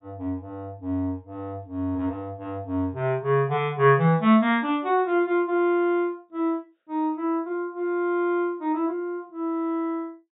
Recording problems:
treble cut off; nothing above 4 kHz

